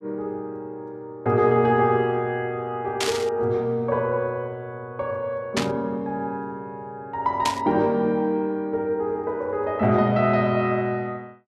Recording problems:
static burst; at 3 s, at 5.5 s and at 7.5 s; peak +3 dB vs average level

